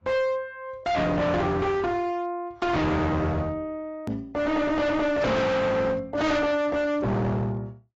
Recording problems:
codec artefacts; AAC, log-spectral distance 2 dB
distorted audio; hard clipping, signal-to-distortion ratio 6 dB
edit click; at 4 s

